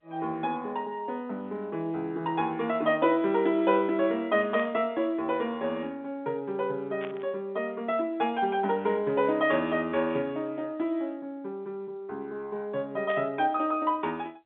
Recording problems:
telephone audio; 170 Hz to 3.8 kHz, G.711
burst of static; at 4.5 s, at 7 s and at 13 s; peak -8 dB vs average level

